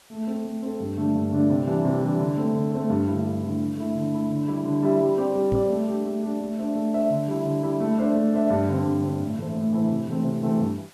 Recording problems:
background hiss; slope -1 dB per octave, SNR 27 dB
knock on the microphone; at 5.5 s; peak -1 dB vs average level

